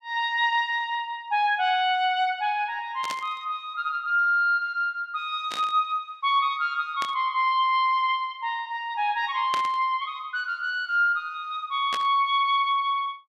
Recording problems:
static burst; 5 times, first at 3 s; peak -3 dB vs average level

